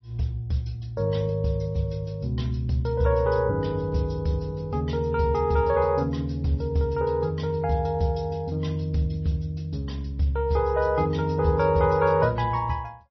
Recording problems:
lossy compression; MP3, log-spectral distance 2 dB, nothing above 5.8 kHz

